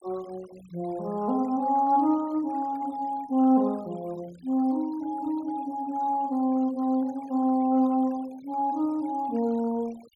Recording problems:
noise reduction artefacts; signal-to-artefact ratio 26 dB

